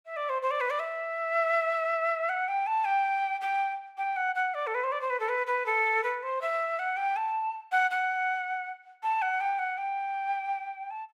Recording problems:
none

